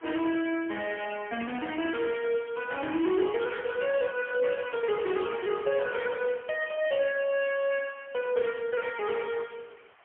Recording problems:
phone line; 280 Hz to 3.2 kHz, AMR-NB, then MP3
hiss; SNR 28 dB

